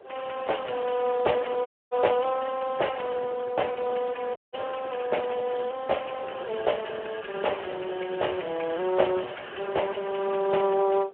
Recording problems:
phone line; 320 Hz to 3.3 kHz, Speex
wind on the microphone; below 700 Hz, SNR 20 dB
audio cutting out; at 1.5 s and at 4.5 s

